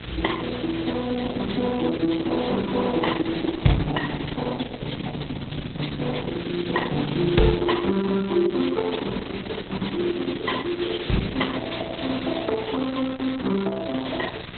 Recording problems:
lossy codec; Opus, log-spectral distance 17 dB, nothing above 4 kHz
hum; 60 Hz, harmonics up to 1.1 kHz, SNR 15 dB
background hiss; SNR 12 dB

